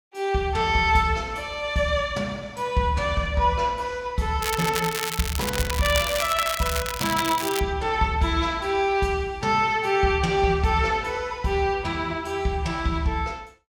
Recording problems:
crackling; from 4.5 to 7.5 s; loose cable, SNR 5 dB

